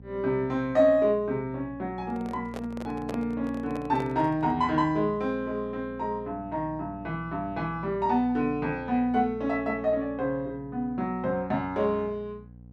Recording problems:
electrical hum; 60 Hz, harmonics up to 540 Hz, SNR 18 dB
handling noise; from 2 to 4.5 s; peak -4 dB vs average level

